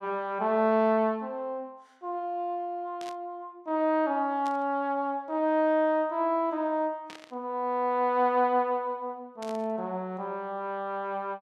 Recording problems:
burst of static; 4 times, first at 3 s; peak -12 dB vs average level

